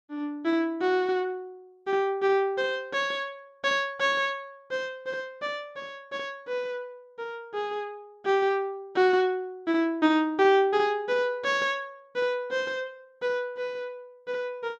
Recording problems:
none

